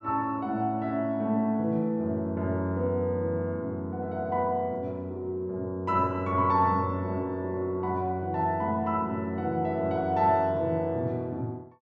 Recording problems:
none

